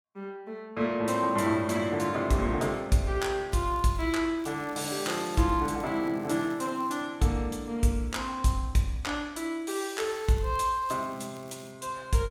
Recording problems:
crackle; at 3.5 s, from 4.5 to 7 s and from 10 to 12 s; loose cable, SNR 27 dB

